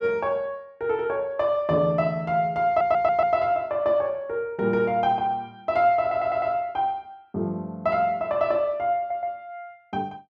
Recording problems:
stutter; at 2.5 s, at 6 s and at 9 s

